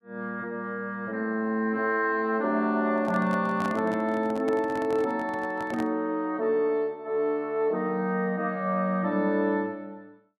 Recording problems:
microphone handling noise; from 3 to 6 s; peak -5 dB vs average level

